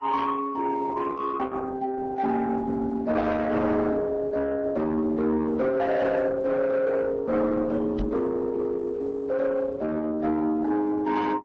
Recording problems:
codec artefacts; Vorbis, then Opus, log-spectral distance 2 dB
distortion; soft clipping, signal-to-distortion ratio 11 dB
microphone bump; at 8 s; peak -1 dB vs average level

